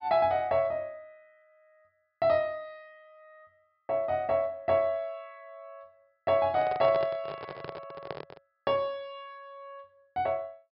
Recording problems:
treble missing; nothing above 5.5 kHz
microphone handling noise; from 6.5 to 8.5 s; peak -4 dB vs average level

